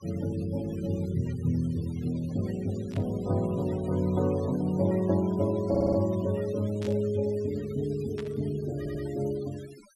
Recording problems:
denoising artefacts; signal-to-artefact ratio 20 dB
static burst; at 3 s, at 7 s and at 8 s; peak -10 dB vs average level
audio stuttering; at 5.5 s and at 9 s

